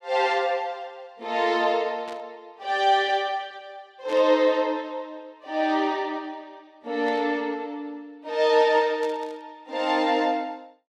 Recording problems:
static burst; 4 times, first at 2 s; peak -13 dB vs average level

